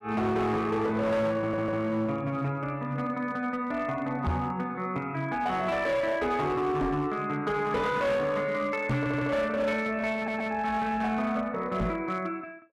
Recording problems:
distortion; hard clipping, signal-to-distortion ratio 11 dB
stutter; at 1.5 s, at 9 s and at 10 s
microphone thump; 4 times, first at 4.5 s; peak +3 dB vs average level

